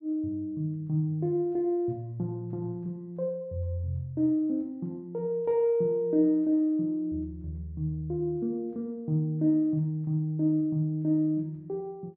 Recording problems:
none

